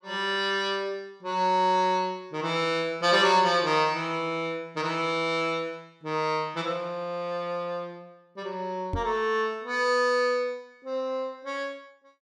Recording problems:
microphone thump; at 9 s; peak -1 dB vs average level

